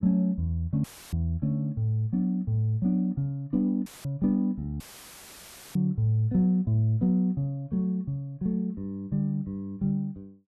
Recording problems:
dropout; at 1 s, at 4 s and at 5 s for 1 s; filled with static

